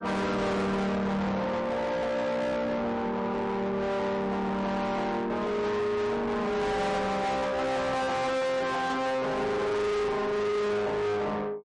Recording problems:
lossy codec; MP3, log-spectral distance 2 dB, nothing above 10.4 kHz
distorted audio; soft clipping, signal-to-distortion ratio 6 dB

